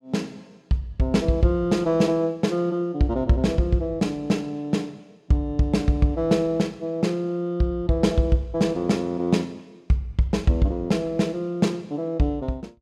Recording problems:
none

